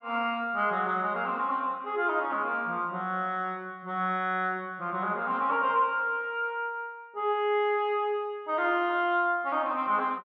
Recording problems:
none

